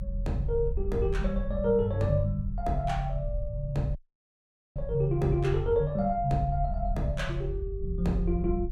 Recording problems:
rumble; below 60 Hz, strongest tone 42 Hz, SNR 7 dB
dropout; at 4 s for 1 s

